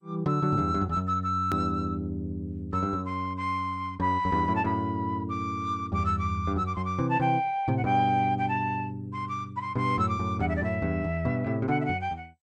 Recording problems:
lossy compression; MP2, log-spectral distance 2 dB, nothing above 18.3 kHz
click at an edit; at 1.5 s

